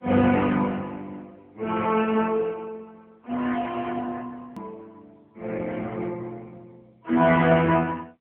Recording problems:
telephone audio; 190 Hz to 3.2 kHz, AMR-NB
edit click; at 4.5 s

